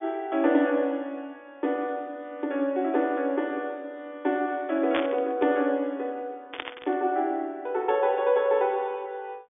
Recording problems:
phone line; 240 Hz to 3.6 kHz, G.726
burst of static; at 5 s and at 6.5 s; peak +1 dB vs average level

